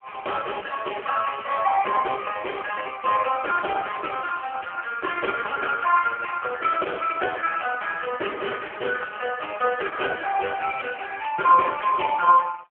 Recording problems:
telephone audio; 370 Hz to 3.1 kHz, AMR-NB

